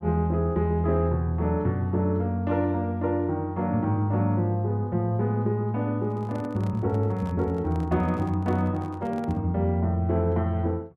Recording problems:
handling noise; from 6 to 9.5 s; peak -11 dB vs average level

